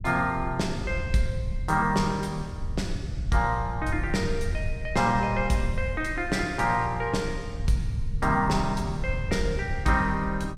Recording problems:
low-frequency rumble; below 96 Hz, SNR 7 dB

